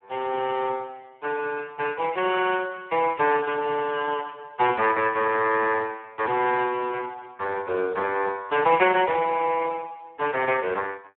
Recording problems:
phone line; 300 Hz to 3.2 kHz, Speex

